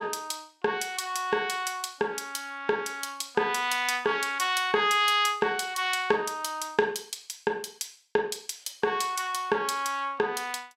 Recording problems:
none

